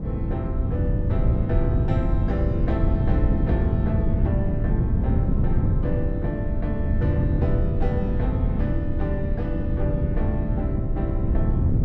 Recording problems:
wind on the microphone; below 140 Hz, SNR -7 dB

